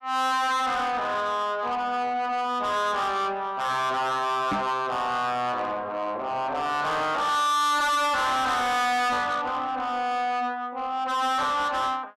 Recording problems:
distortion; soft clipping, signal-to-distortion ratio 6 dB
knock on the microphone; at 4.5 s; peak +2 dB vs average level

